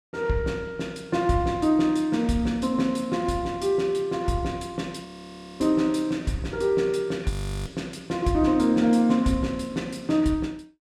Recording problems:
audio freezing; at 5 s for 0.5 s and at 7.5 s

